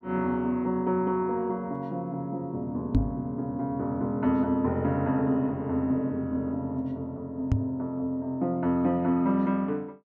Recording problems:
microphone thump; at 3 s and at 7.5 s; peak +8 dB vs average level

